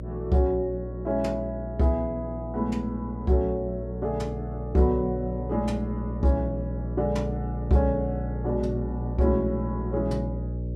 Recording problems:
hum; 60 Hz, harmonics up to 600 Hz, SNR 6 dB

